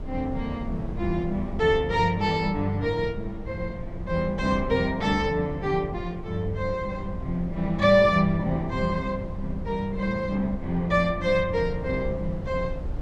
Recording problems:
low-frequency rumble; below 120 Hz, SNR 11 dB

